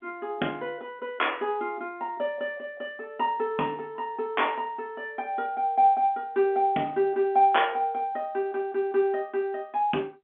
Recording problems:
phone line; 190 Hz to 3.5 kHz, G.711

